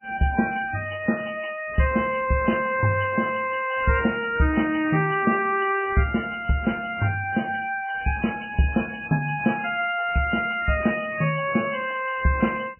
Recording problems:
lossy compression; MP3, log-spectral distance 6 dB, nothing above 2.5 kHz

